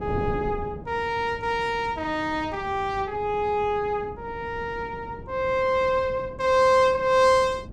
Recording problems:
wind on the microphone; below 310 Hz, SNR 16 dB

